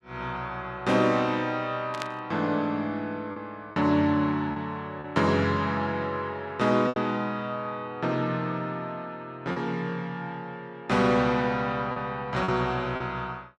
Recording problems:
lost packets; 3% of the sound replaced, filled with repeated pitch periods
burst of static; at 2 s; peak -2 dB vs average level

